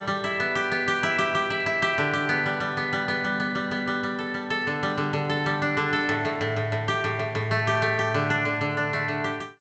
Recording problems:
lossy codec; G.722, log-spectral distance 2 dB, nothing above 7.6 kHz

